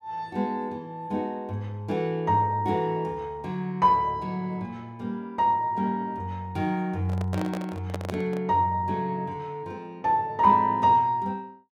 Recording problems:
microphone handling noise; from 7 to 8.5 s; peak -3 dB vs average level

